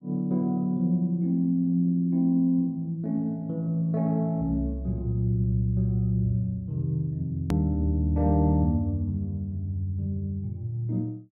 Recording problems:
click at an edit; at 7.5 s

